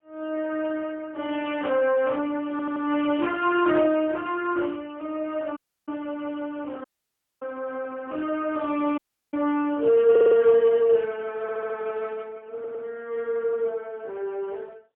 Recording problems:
telephone audio; 260 Hz to 3.5 kHz, AMR-NB, then MP3
audio stuttering; 4 times, first at 2.5 s
dropout; at 5.5 s, at 7 s for 0.5 s and at 9 s

